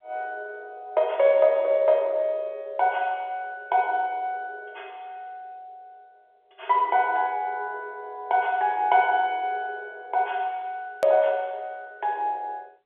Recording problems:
phone line; 340 Hz to 3.8 kHz, G.711
click at an edit; at 11 s

